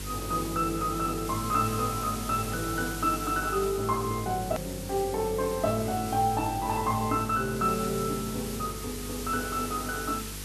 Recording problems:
hum; 50 Hz, harmonics up to 500 Hz, SNR 12 dB
hiss; slope +2 dB per octave, SNR 10 dB
hard cut with a click; at 4.5 s

